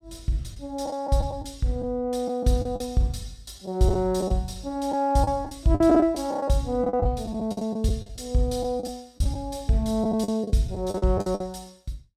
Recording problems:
lost packets; 10% of the sound replaced, filled with the last packet

